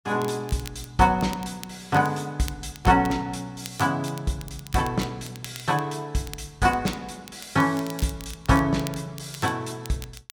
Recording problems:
crackle; vinyl, SNR 18 dB

